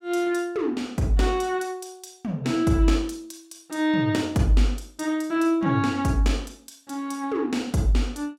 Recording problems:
none

